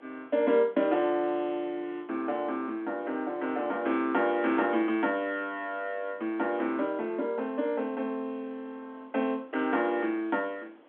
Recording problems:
phone line; 220 Hz to 3.4 kHz, G.711
hiss; SNR 28 dB

